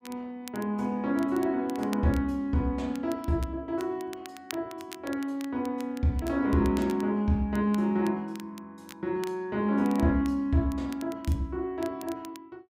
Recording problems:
crackling; vinyl, SNR 20 dB

